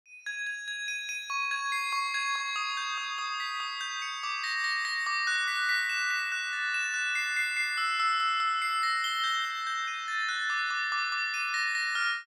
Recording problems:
none

